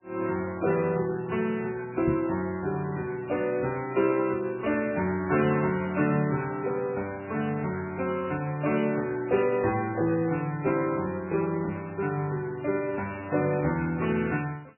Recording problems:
lossy compression; MP3, log-spectral distance 3 dB, nothing above 2.7 kHz
knock on the microphone; at 2 s; peak +1 dB vs average level

